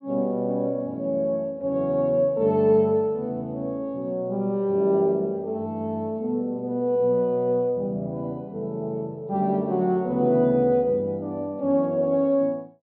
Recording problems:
treble cut off; nothing above 4.7 kHz

